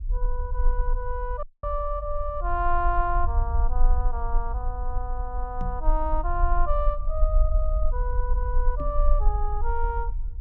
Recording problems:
low-frequency rumble; below 46 Hz, strongest tone 22 Hz, SNR -2 dB
dropout; at 1.5 s
knock on the microphone; at 5.5 s and at 9 s; peak -1 dB vs average level

